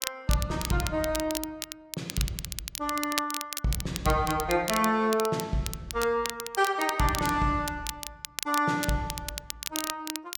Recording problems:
crackling; vinyl, SNR 7 dB

